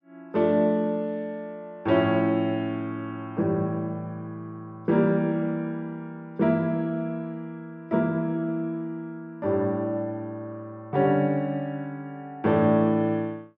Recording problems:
none

